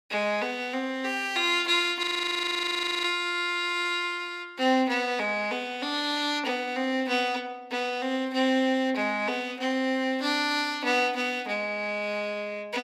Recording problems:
audio freezing; at 2 s for 1 s

